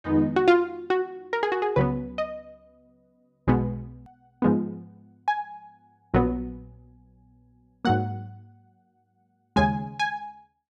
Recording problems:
click at an edit; at 4 s

